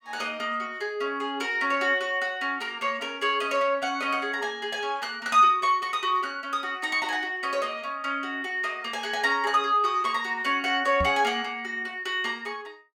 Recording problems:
microphone thump; at 11 s; peak -2 dB vs average level

